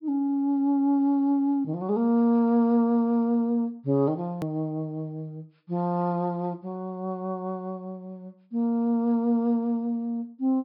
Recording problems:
low-pass filter; nothing above 5.5 kHz
edit click; at 4.5 s

